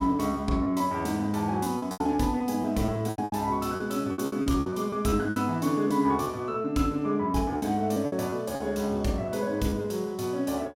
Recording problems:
packet loss; 11% of the sound replaced, filled with repeated pitch periods

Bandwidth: 16 kHz